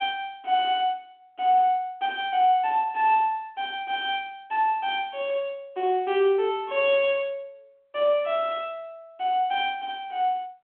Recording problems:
phone line; 260 Hz to 3.5 kHz, G.726

